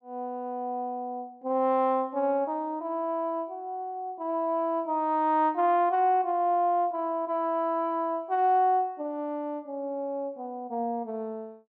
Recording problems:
none

